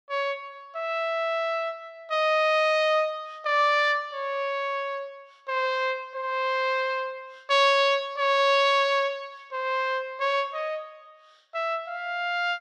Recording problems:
none

